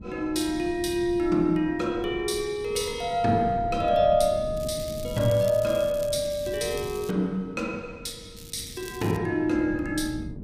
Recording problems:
wind noise; below 230 Hz, SNR 15 dB
crackle; from 4.5 to 7 s and at 8.5 s; loose cable, SNR 18 dB

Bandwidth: 15 kHz